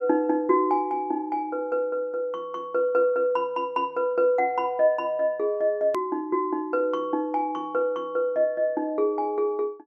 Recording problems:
hard cut with a click; at 6 s

